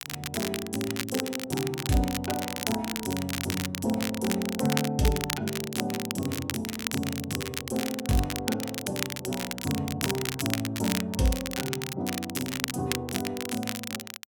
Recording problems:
crackling; vinyl, SNR 3 dB

